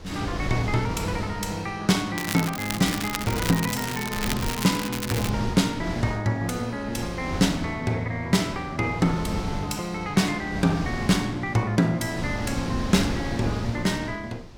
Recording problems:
wind noise; below 410 Hz, SNR 9 dB
crackle; from 2 to 5.5 s; loose cable, SNR 6 dB

